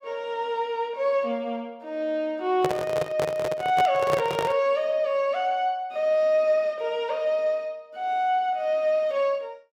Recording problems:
handling noise; from 2.5 to 4.5 s; peak +1 dB vs average level

